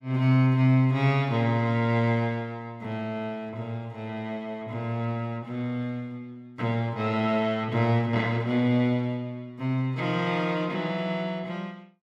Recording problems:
none

